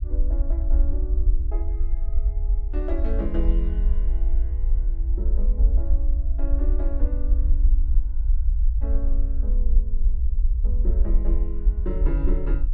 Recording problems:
rumble; below 52 Hz, SNR -12 dB

